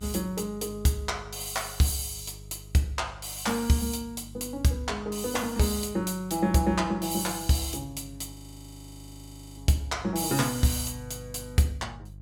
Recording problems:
hum; 50 Hz, harmonics up to 350 Hz, SNR 18 dB
frozen audio; at 8.5 s for 1 s

